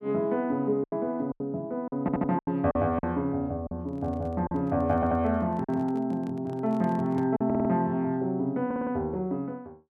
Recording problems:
packet loss; 6% of the sound replaced, filled with silence
stutter; 4 times, first at 2 s
microphone handling noise; from 4 to 7.5 s; peak -11 dB vs average level

